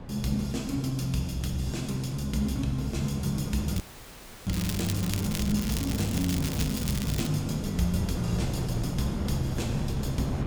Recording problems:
wind noise; below 340 Hz, SNR 8 dB
crackle; from 4 to 7.5 s; loose cable, SNR 7 dB
dropout; at 4 s for 0.5 s

